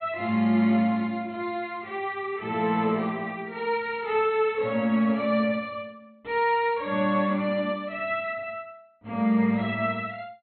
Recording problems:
treble cut off; nothing above 4.2 kHz

